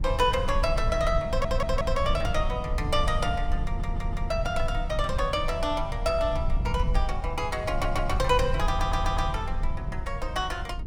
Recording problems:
low-frequency rumble; below 76 Hz, SNR 3 dB
stutter; 4 times, first at 1.5 s

